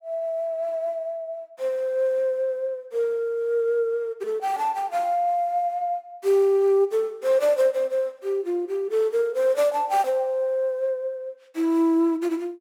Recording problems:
none

